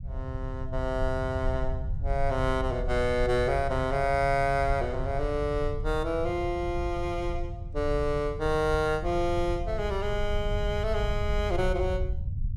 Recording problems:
rumble; below 86 Hz, SNR 6 dB

